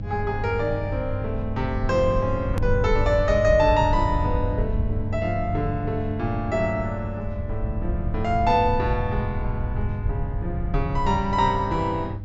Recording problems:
low-pass filter; nothing above 8 kHz
hum; 50 Hz, harmonics up to 500 Hz, SNR 8 dB
rumble; below 86 Hz, SNR 6 dB
edit click; at 2.5 s

